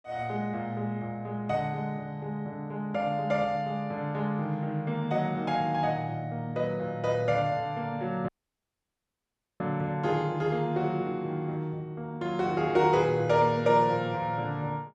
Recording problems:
dropout; at 8.5 s for 1.5 s

